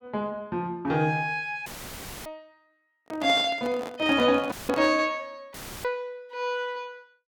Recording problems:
dropout; at 1.5 s for 0.5 s, at 4.5 s and at 5.5 s; filled with static
handling noise; from 3 to 5 s; peak -3 dB vs average level

